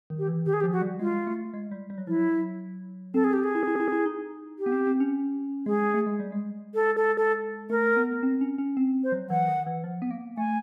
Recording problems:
stutter; at 3.5 s and at 7 s

